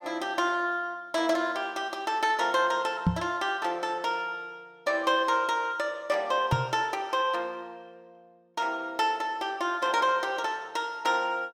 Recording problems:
microphone bump; at 3 s and at 6.5 s; peak +7 dB vs average level

